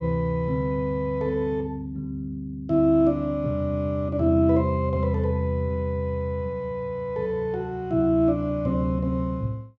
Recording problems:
none

